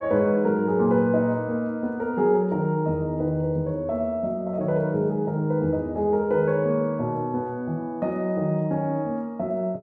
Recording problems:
none

